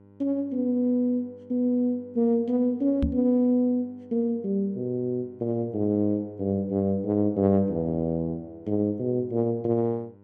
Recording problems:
hum; 50 Hz, harmonics up to 1.1 kHz, SNR 27 dB
knock on the microphone; at 3 s; peak +3 dB vs average level

